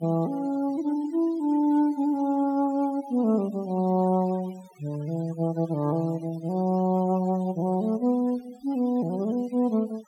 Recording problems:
noise reduction artefacts; signal-to-artefact ratio 24 dB

